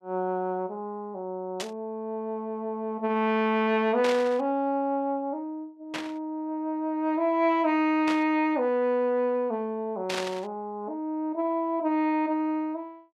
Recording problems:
static burst; 5 times, first at 1.5 s; peak -1 dB vs average level

